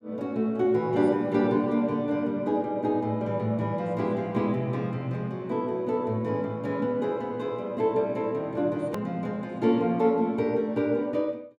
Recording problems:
edit click; at 9 s

